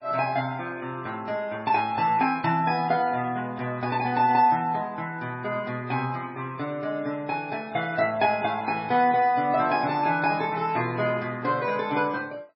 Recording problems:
codec artefacts; MP3, log-spectral distance 2 dB, nothing above 4.9 kHz

